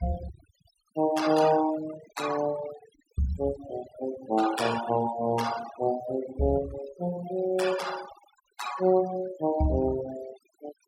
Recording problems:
denoising artefacts; signal-to-artefact ratio 12 dB

